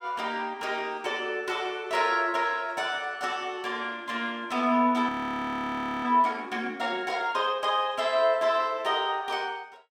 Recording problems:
audio freezing; at 5 s for 1 s

